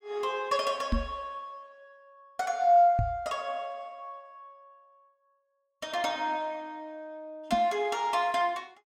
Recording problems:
microphone bump; at 1 s, at 3 s and at 7.5 s; peak +3 dB vs average level

